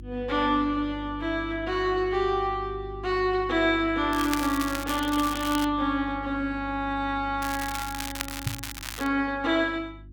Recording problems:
hum; 50 Hz, harmonics up to 350 Hz, SNR 15 dB
crackling; from 4 to 5.5 s and from 7.5 to 9 s; loose cable, SNR 9 dB
knock on the microphone; at 8.5 s; peak 0 dB vs average level

